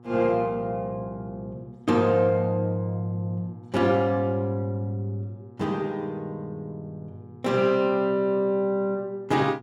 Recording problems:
hum; 60 Hz, harmonics up to 1.2 kHz, SNR 23 dB

